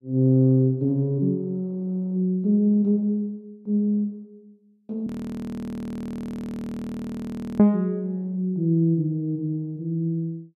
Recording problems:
audio freezing; at 5 s for 2.5 s

